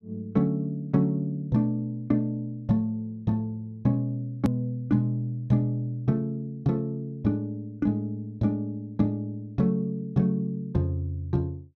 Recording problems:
click at an edit; at 4.5 s

